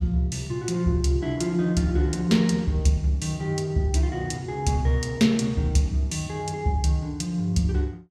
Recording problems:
none

